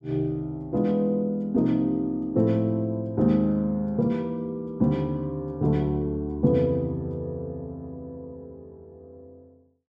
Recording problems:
none

